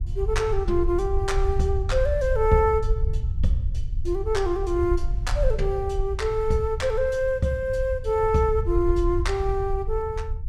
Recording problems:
low-frequency rumble; below 68 Hz, SNR 4 dB

